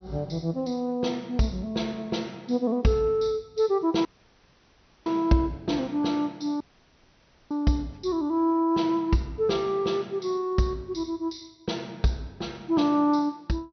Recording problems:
treble missing; nothing above 6.1 kHz
audio cutting out; at 4 s for 1 s and at 6.5 s for 1 s

